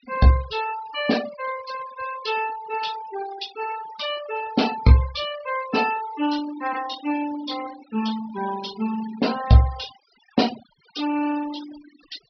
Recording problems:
treble cut off; nothing above 5.5 kHz
denoising artefacts; signal-to-artefact ratio 14 dB

